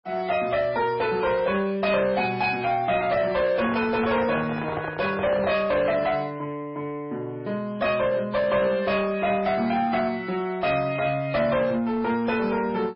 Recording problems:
codec artefacts; MP3, log-spectral distance 3 dB, nothing above 4.9 kHz
distortion; soft clipping, signal-to-distortion ratio 11 dB
microphone handling noise; from 3.5 to 5.5 s; peak -2 dB vs average level

